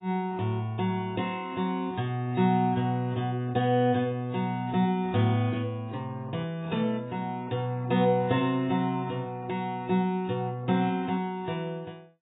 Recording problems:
codec artefacts; AAC, log-spectral distance 2 dB, nothing above 3.8 kHz

